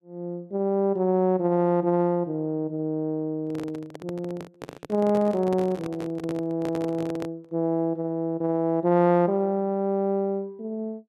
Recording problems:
microphone handling noise; from 3.5 to 7.5 s; peak -7 dB vs average level

